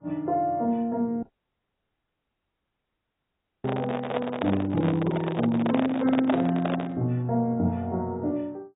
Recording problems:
lossy compression; AAC, log-spectral distance 2 dB, nothing above 3.5 kHz
audio cutting out; at 1 s for 2.5 s
microphone handling noise; from 3.5 to 7 s; peak +3 dB vs average level

